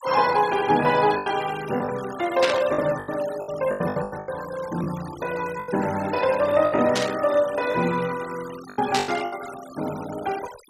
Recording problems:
denoising artefacts; signal-to-artefact ratio 16 dB
packet loss; 10% of the sound replaced, filled with the last packet
static burst; at 2.5 s, at 7 s and at 9 s; peak +4 dB vs average level

